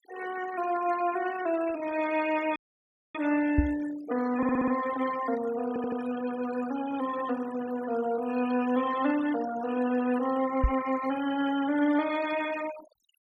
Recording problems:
denoising artefacts; signal-to-artefact ratio 13 dB
audio cutting out; at 2.5 s for 0.5 s
microphone thump; at 3.5 s and at 11 s; peak +7 dB vs average level
stutter; at 4.5 s and at 5.5 s

